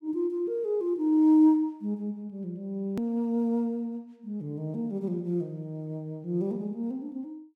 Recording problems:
edit click; at 3 s

